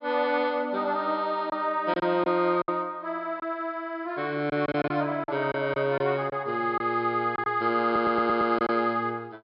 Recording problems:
treble cut off; nothing above 5.5 kHz
lost packets; 5% of the sound replaced, filled with silence
stutter; at 8 s

